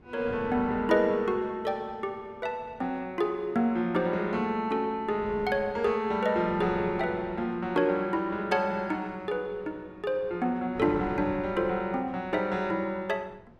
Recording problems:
wind on the microphone; below 530 Hz, SNR 18 dB

